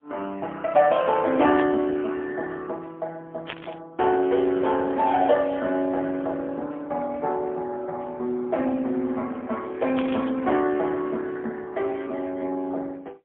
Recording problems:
telephone audio; 190 Hz to 3.5 kHz, AMR-NB, then MP3
static burst; at 1.5 s, at 3.5 s and at 10 s; peak -4 dB vs average level

